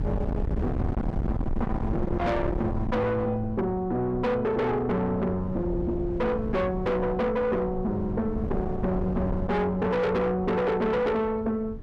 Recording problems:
distortion; soft clipping, signal-to-distortion ratio 7 dB
wind noise; below 220 Hz, SNR 6 dB

